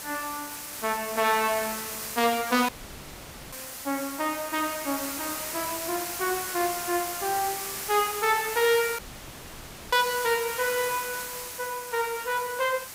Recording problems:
background hiss; slope 0 dB per octave, SNR 6 dB
dropout; at 2.5 s for 1 s and at 9 s for 1 s

